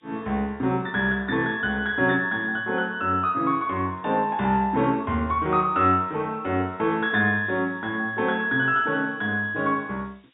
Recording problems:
treble missing; nothing above 4 kHz
background hiss; SNR 40 dB

